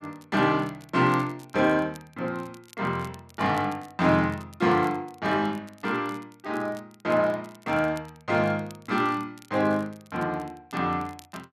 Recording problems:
crackling; vinyl, SNR 27 dB

